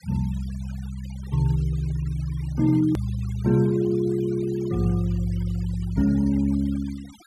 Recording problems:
noise reduction artefacts; signal-to-artefact ratio 23 dB
edit click; at 3 s

